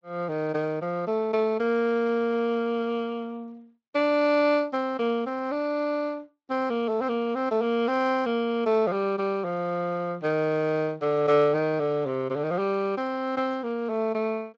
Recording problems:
lossy codec; Speex, log-spectral distance 2 dB

